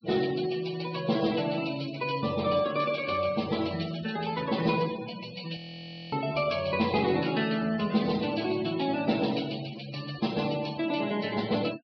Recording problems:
low-pass filter; nothing above 5.5 kHz
denoising artefacts; signal-to-artefact ratio 15 dB
frozen audio; at 5.5 s for 0.5 s

